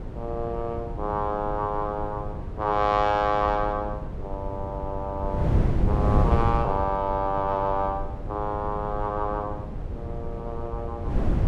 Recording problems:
wind on the microphone; below 170 Hz, SNR 3 dB

